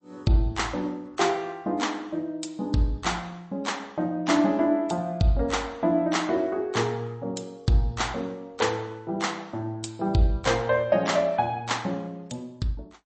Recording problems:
lossy compression; MP3, log-spectral distance 3 dB, nothing above 8.2 kHz

